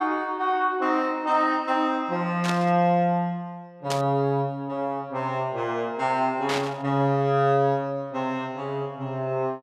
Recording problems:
burst of static; at 2.5 s, at 4 s and at 6.5 s; peak -1 dB vs average level

